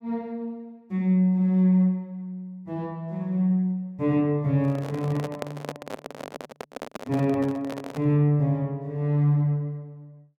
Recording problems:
handling noise; from 4.5 to 8 s; peak -3 dB vs average level

